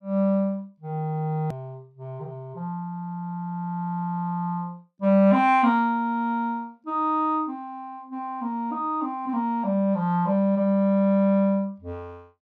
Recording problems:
edit click; at 1.5 s

